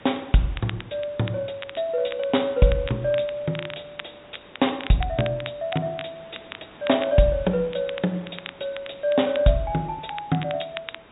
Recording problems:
low-pass filter; nothing above 4 kHz
background hiss; SNR 23 dB
crackling; vinyl, SNR 15 dB

